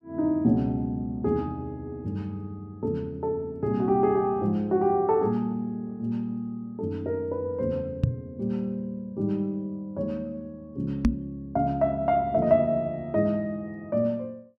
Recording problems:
microphone bump; at 8 s and at 11 s; peak +9 dB vs average level

